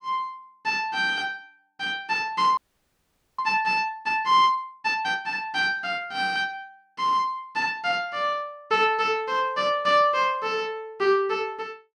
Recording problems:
frozen audio; at 2.5 s for 1 s

